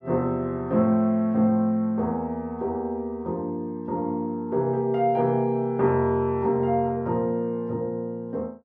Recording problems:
none

